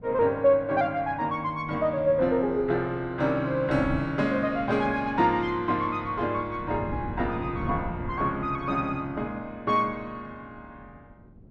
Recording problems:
wind on the microphone; below 230 Hz, SNR 14 dB

